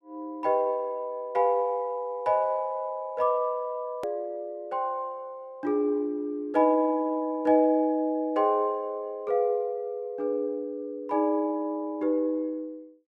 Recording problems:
edit click; at 4 s

